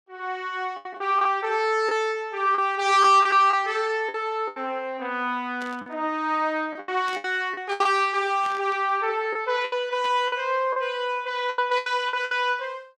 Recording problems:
lost packets; 9% of the sound replaced, filled with the last packet
burst of static; 5 times, first at 3 s; peak -12 dB vs average level

